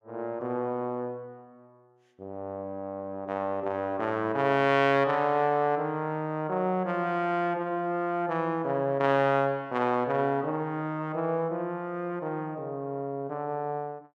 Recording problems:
none

